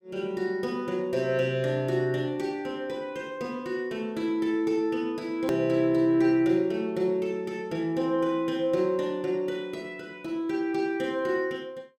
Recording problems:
hard cut with a click; at 5.5 s

